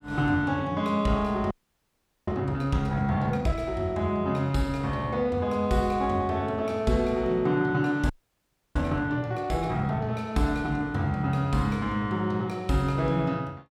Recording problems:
audio freezing; at 1.5 s for 1 s and at 8 s for 0.5 s

